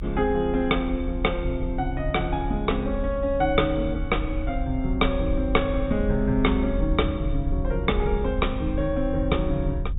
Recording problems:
treble missing; nothing above 4 kHz
low-frequency rumble; below 72 Hz, SNR 5 dB

